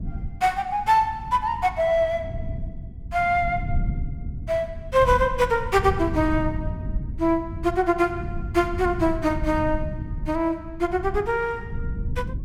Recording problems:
rumble; below 120 Hz, SNR 9 dB

